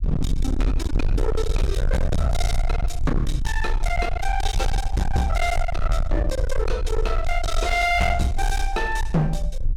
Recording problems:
distorted audio; hard clipping, signal-to-distortion ratio 6 dB
rumble; below 64 Hz, SNR 1 dB

